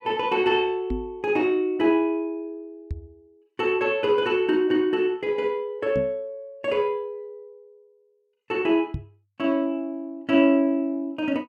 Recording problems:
microphone bump; 4 times, first at 1 s; peak -2 dB vs average level

